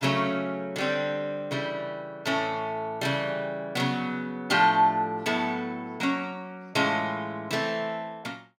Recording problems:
none

